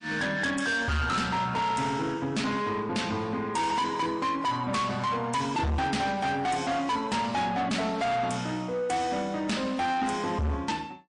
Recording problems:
lossy compression; MP3, log-spectral distance 2 dB, nothing above 9 kHz
distorted audio; soft clipping, signal-to-distortion ratio 7 dB

